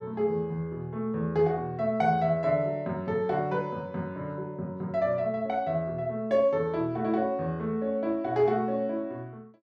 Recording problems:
none

